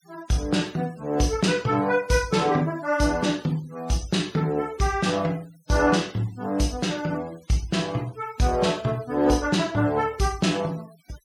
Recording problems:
noise reduction artefacts; signal-to-artefact ratio 23 dB

